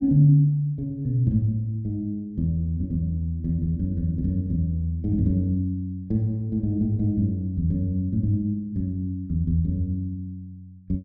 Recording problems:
none

